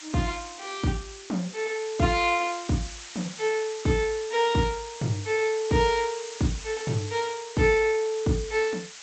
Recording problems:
lossy codec; G.722, then MP2, log-spectral distance 16 dB, nothing above 6.9 kHz
hiss; slope +3 dB per octave, SNR 13 dB

